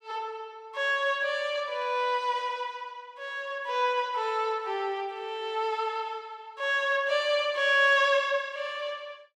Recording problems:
none

